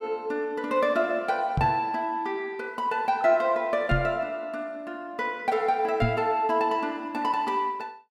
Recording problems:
microphone bump; at 1.5 s, at 4 s and at 6 s; peak +4 dB vs average level

